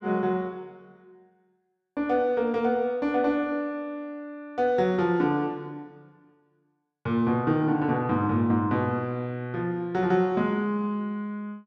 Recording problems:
none

